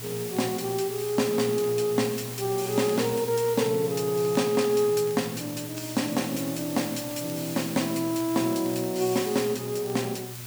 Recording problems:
electrical hum; 60 Hz, harmonics up to 600 Hz, SNR 16 dB
background hiss; slope 0 dB per octave, SNR 11 dB
crackle; vinyl, SNR 28 dB

